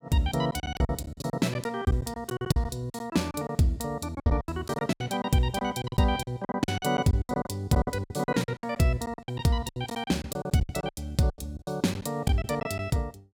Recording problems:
lost packets; 18% of the sound replaced, filled with silence

